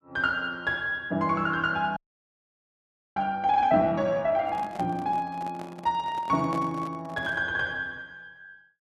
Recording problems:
audio freezing; at 2 s for 1 s
handling noise; from 4.5 to 7.5 s; peak -6 dB vs average level

